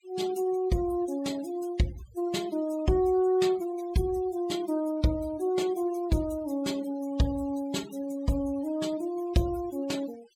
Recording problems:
denoising artefacts; signal-to-artefact ratio 20 dB

